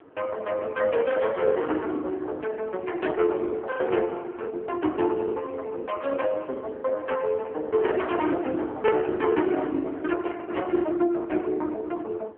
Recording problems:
phone line; 240 Hz to 3.1 kHz, AMR-NB
wind on the microphone; below 760 Hz, SNR 23 dB
lost packets; 13% of the sound replaced, filled with the last packet

